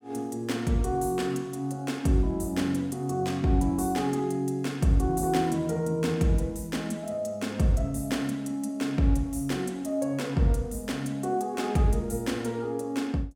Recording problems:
none

